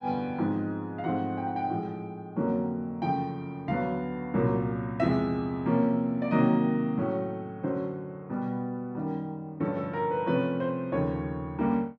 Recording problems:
none

